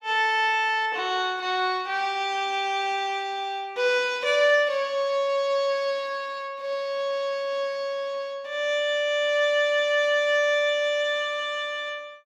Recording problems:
none

